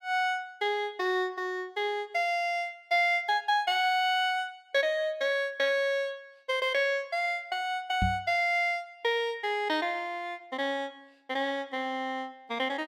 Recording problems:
microphone bump; at 8 s; peak +2 dB vs average level

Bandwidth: 16.5 kHz